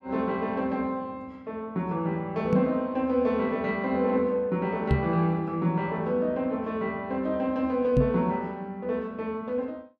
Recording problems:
microphone bump; at 2.5 s, at 5 s and at 8 s; peak +7 dB vs average level

